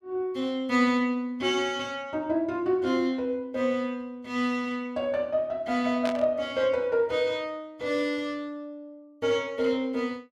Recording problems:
burst of static; at 6 s; peak -4 dB vs average level

